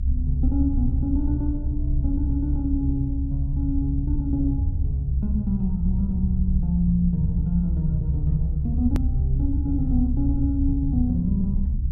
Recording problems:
low-frequency rumble; below 70 Hz, SNR 0 dB
hard cut with a click; at 9 s

